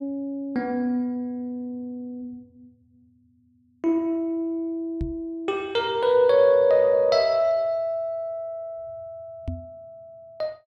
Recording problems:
microphone thump; at 5 s and at 9.5 s; peak -3 dB vs average level

